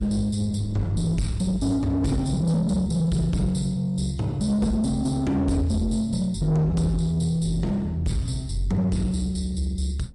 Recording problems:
lossy compression; MP3, log-spectral distance 2 dB
distortion; soft clipping, signal-to-distortion ratio 10 dB
wind noise; below 210 Hz, SNR 18 dB

